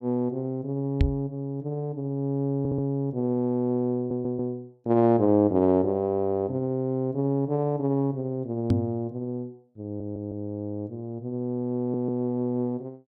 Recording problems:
knock on the microphone; at 1 s and at 8.5 s; peak +7 dB vs average level
audio stuttering; 4 times, first at 2.5 s

